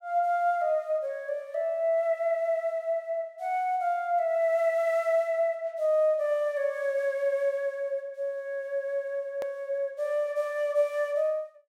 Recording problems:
edit click; at 9.5 s

